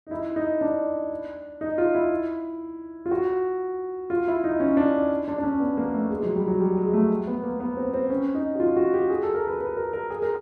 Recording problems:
none

